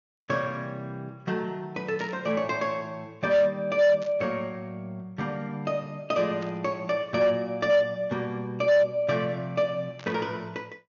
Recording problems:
treble missing; nothing above 6.9 kHz
distorted audio; hard clipping, signal-to-distortion ratio 12 dB
static burst; 4 times, first at 2 s; peak -14 dB vs average level

